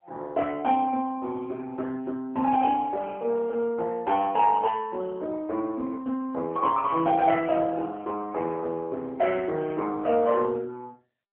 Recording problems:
telephone audio; 220 Hz to 3.2 kHz, AMR-NB

